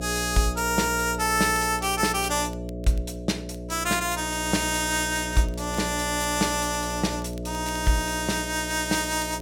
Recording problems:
electrical hum; 60 Hz, harmonics up to 660 Hz, SNR 9 dB
crackling; vinyl, SNR 27 dB

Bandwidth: 17 kHz